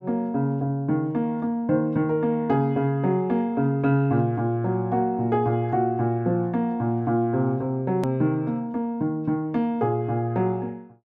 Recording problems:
edit click; at 8 s

